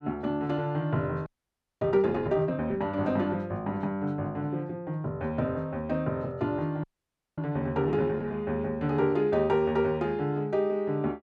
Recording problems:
frozen audio; at 1.5 s for 0.5 s and at 7 s for 0.5 s

